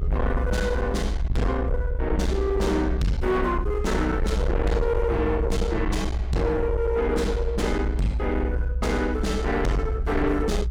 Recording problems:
distortion; soft clipping, signal-to-distortion ratio 7 dB
rumble; below 66 Hz, SNR 2 dB

